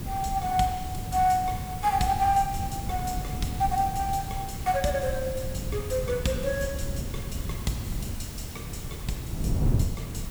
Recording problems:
hiss; slope -3 dB per octave, SNR 14 dB
wind on the microphone; below 150 Hz, SNR 6 dB

